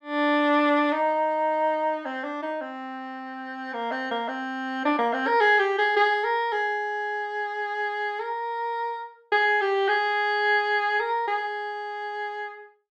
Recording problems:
none

